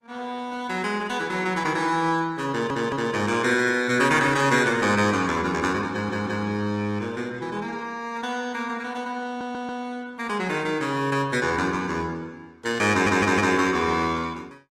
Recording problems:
codec artefacts; Opus, log-spectral distance 4 dB, nothing above 16.5 kHz
stutter; 4 times, first at 2.5 s

